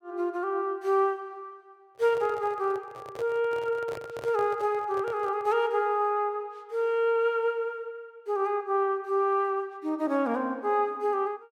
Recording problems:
handling noise; from 2 to 5.5 s; peak -8 dB vs average level

